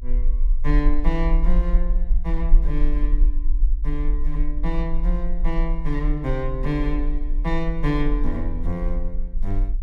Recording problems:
rumble; below 40 Hz, strongest tone 22 Hz, SNR -3 dB

